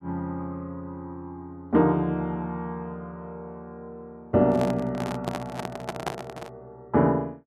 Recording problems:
handling noise; from 4.5 to 6.5 s; peak +2 dB vs average level

